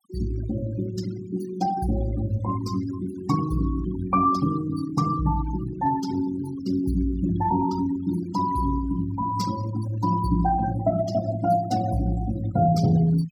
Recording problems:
denoising artefacts; signal-to-artefact ratio 15 dB

